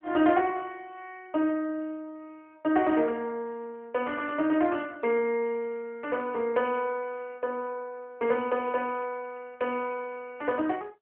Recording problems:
telephone audio; 320 Hz to 3 kHz, AMR-NB

